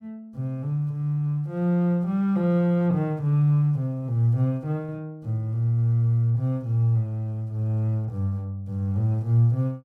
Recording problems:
none

